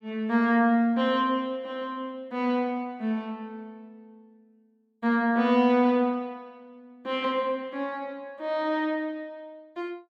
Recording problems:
none

